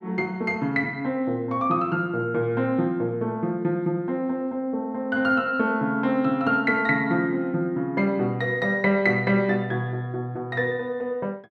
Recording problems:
none

